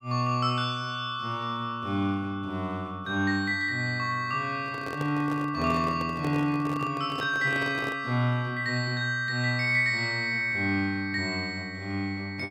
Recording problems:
microphone handling noise; from 4.5 to 8 s; peak -5 dB vs average level

